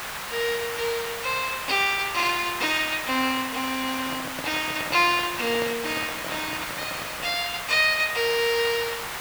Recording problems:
background hiss; SNR 6 dB
microphone handling noise; from 4 to 7.5 s; peak -6 dB vs average level

